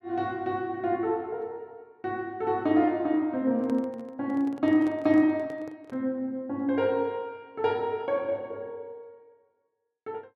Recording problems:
microphone handling noise; from 3.5 to 6 s; peak -9 dB vs average level

